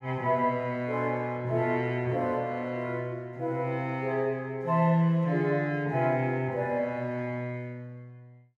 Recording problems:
none

